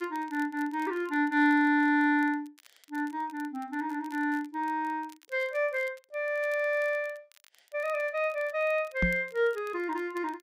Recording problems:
crackling; vinyl, SNR 28 dB
microphone bump; at 9 s; peak +4 dB vs average level

